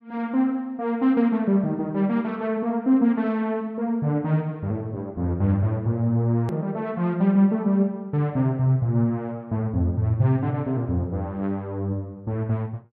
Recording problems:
hard cut with a click; at 6.5 s

